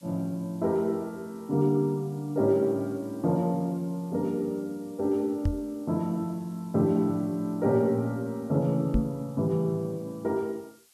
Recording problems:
hiss; slope +2 dB per octave, SNR 29 dB
microphone thump; at 5.5 s and at 9 s; peak +6 dB vs average level

